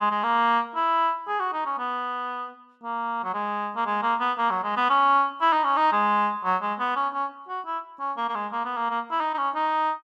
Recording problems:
none

